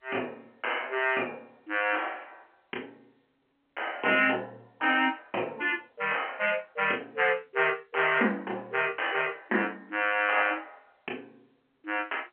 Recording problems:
phone line; 240 Hz to 3.1 kHz, G.711

